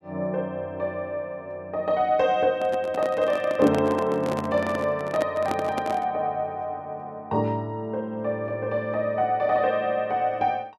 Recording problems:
microphone handling noise; from 2.5 to 6 s; peak 0 dB vs average level

